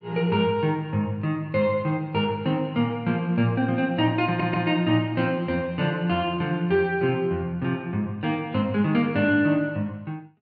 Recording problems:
stutter; at 4.5 s

